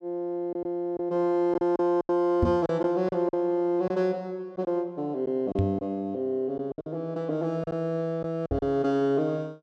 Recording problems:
lost packets; 7% of the sound replaced, filled with silence
microphone bump; at 2.5 s, at 5.5 s and at 8.5 s; peak +5 dB vs average level

